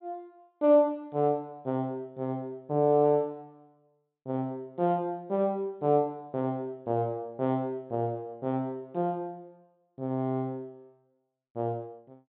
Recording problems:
treble cut off; nothing above 4 kHz

